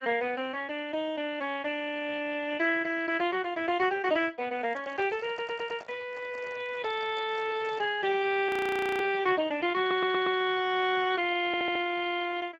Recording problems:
lossy compression; Speex, log-spectral distance 4 dB, nothing above 16.1 kHz
microphone handling noise; from 4.5 to 8 s; peak -11 dB vs average level
audio stuttering; at 5.5 s, at 10 s and at 11 s
audio freezing; at 8.5 s for 0.5 s

